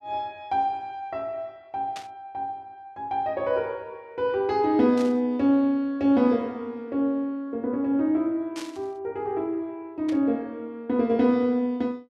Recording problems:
burst of static; 4 times, first at 2 s; peak -9 dB vs average level

